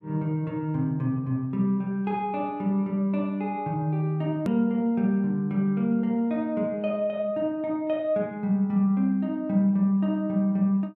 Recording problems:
hard cut with a click; at 4.5 s

